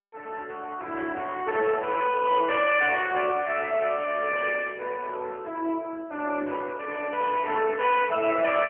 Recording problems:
phone line; 240 Hz to 2.9 kHz, AMR-NB

